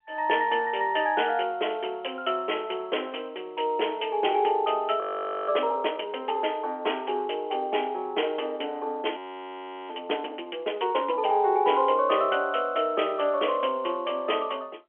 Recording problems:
telephone audio; 280 Hz to 3.3 kHz, G.711
audio freezing; at 5 s and at 9 s for 0.5 s

